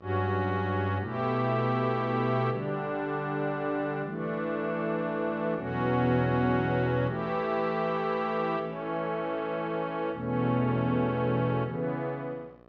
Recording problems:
hum; 60 Hz, harmonics up to 1.9 kHz, SNR 26 dB

